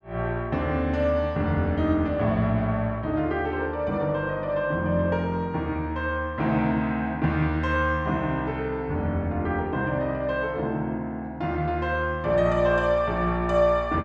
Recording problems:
none

